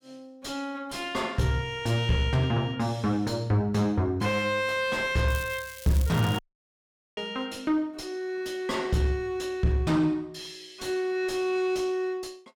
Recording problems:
distorted audio; soft clipping, signal-to-distortion ratio 9 dB
crackle; from 5.5 to 6.5 s; loose cable, SNR 15 dB
dropout; at 6.5 s for 1 s

